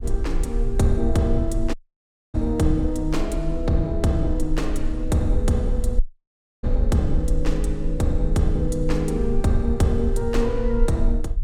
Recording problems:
low-frequency rumble; below 44 Hz, SNR 4 dB
audio cutting out; at 1.5 s for 0.5 s and at 6 s for 0.5 s

